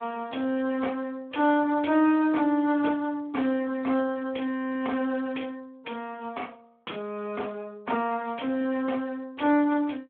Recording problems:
telephone audio; 220 Hz to 3.4 kHz, Speex

